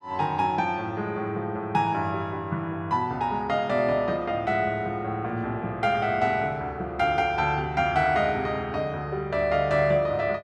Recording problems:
none

